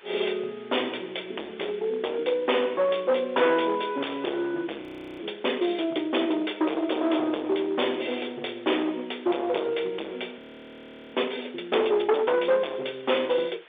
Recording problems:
phone line; 280 Hz to 3.6 kHz, G.711
distortion; hard clipping, signal-to-distortion ratio 8 dB
hiss; SNR 25 dB
frozen audio; at 5 s and at 10 s for 1 s

